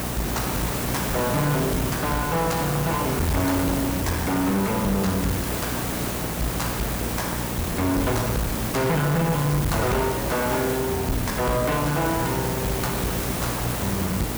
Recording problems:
distorted audio; hard clipping, uneven, signal-to-distortion ratio 9 dB
electrical hum; 60 Hz, harmonics up to 660 Hz, SNR 8 dB
hiss; slope -5 dB per octave, SNR 2 dB

